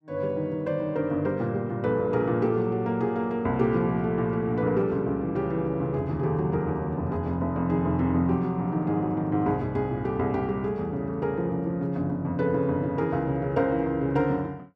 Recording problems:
none

